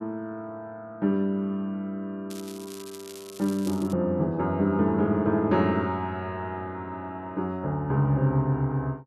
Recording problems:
crackle; from 2.5 to 4 s; loose cable, SNR 18 dB

